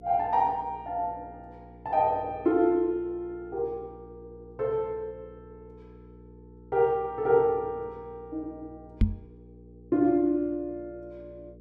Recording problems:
mains hum; 60 Hz, harmonics up to 480 Hz, SNR 22 dB
knock on the microphone; at 9 s; peak +7 dB vs average level

